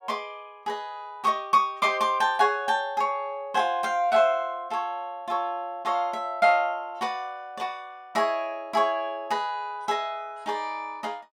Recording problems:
none

